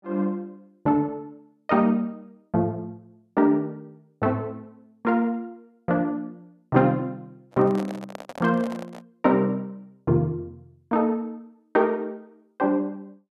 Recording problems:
handling noise; from 7.5 to 9 s; peak -6 dB vs average level

